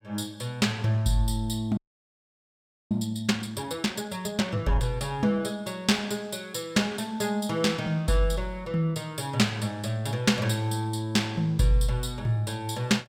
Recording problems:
frozen audio; at 2 s for 1 s

